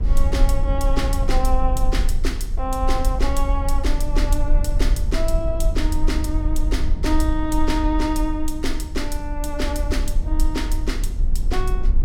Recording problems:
low-frequency rumble; below 50 Hz, strongest tone 18 Hz, SNR -2 dB

